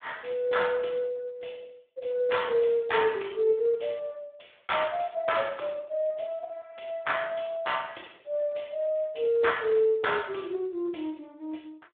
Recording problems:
telephone audio; 260 Hz to 3.6 kHz, Speex

